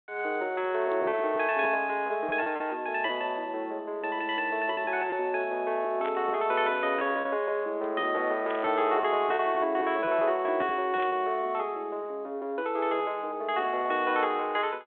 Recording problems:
phone line; 280 Hz to 3.7 kHz, G.726
packet loss; 5% of the sound replaced, filled with repeated pitch periods
static burst; at 6 s, at 8.5 s and at 11 s; peak -10 dB vs average level

